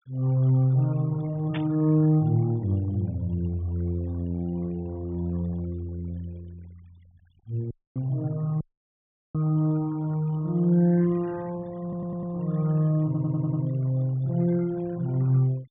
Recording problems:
low-pass filter; nothing above 3.6 kHz
denoising artefacts; signal-to-artefact ratio 27 dB
burst of static; at 1.5 s; peak -7 dB vs average level
dropout; at 7.5 s and at 8.5 s for 0.5 s
stutter; at 12 s and at 13 s

